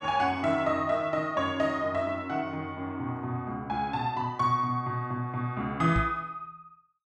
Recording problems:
knock on the microphone; at 6 s; peak +3 dB vs average level

